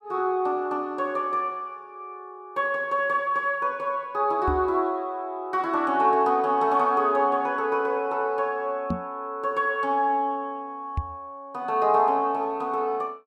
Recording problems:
microphone thump; at 4.5 s, at 9 s and at 11 s; peak +1 dB vs average level

